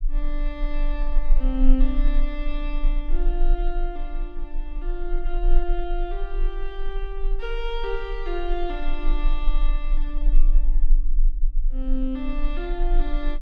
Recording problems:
low-frequency rumble; below 30 Hz, strongest tone 24 Hz, SNR -5 dB

